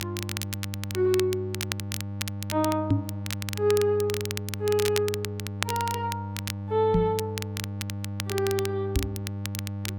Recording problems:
hum; 50 Hz, harmonics up to 900 Hz, SNR 7 dB
crackling; vinyl, SNR 8 dB
microphone bump; at 3 s, at 7 s and at 9 s; peak +8 dB vs average level

